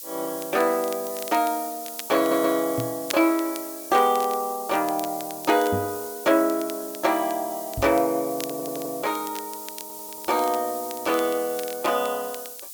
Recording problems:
lossy codec; Opus, log-spectral distance 2 dB, nothing above 19.5 kHz
hiss; SNR 11 dB
crackle; vinyl, SNR 17 dB
stutter; at 2 s, at 8.5 s and at 9.5 s
knock on the microphone; at 3 s, at 5.5 s and at 8 s; peak -1 dB vs average level

